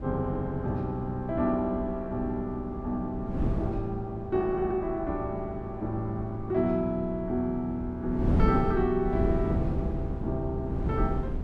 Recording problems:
wind noise; below 230 Hz, SNR 4 dB

